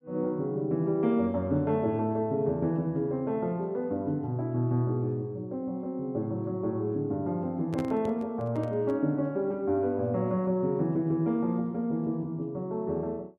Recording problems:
handling noise; from 7.5 to 9 s; peak -4 dB vs average level

